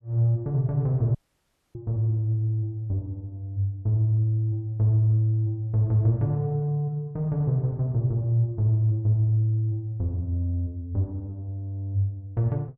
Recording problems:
dropout; at 1 s for 0.5 s

